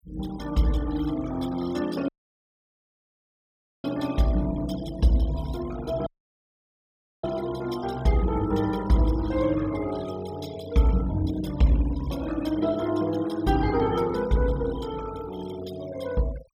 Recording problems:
noise reduction artefacts; signal-to-artefact ratio 16 dB
dropout; at 2 s for 2 s and at 6 s for 1 s

